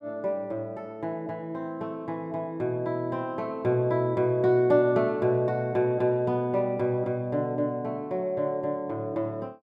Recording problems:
none

